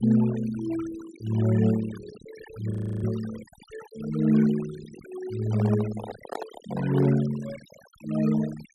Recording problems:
noise reduction artefacts; signal-to-artefact ratio 16 dB
frozen audio; at 2.5 s
handling noise; from 5.5 to 7 s; peak -4 dB vs average level

